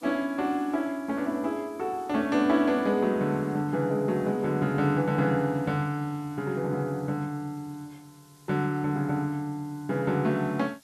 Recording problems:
background hiss; slope 0 dB per octave, SNR 29 dB

